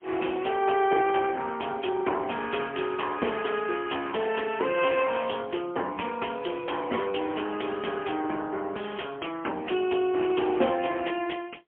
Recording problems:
phone line; 280 Hz to 3.2 kHz, AMR-NB, then MP3

